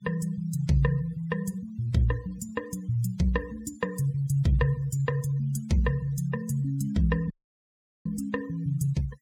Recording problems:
noise reduction artefacts; signal-to-artefact ratio 23 dB
audio cutting out; at 7.5 s for 1 s

